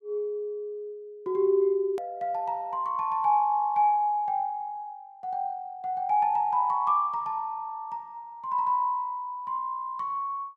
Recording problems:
hard cut with a click; at 2 s

